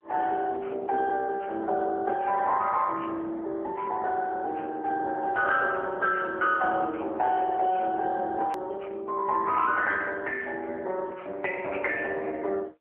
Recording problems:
telephone audio; 340 Hz to 2.5 kHz, AMR-NB
hard cut with a click; at 8.5 s

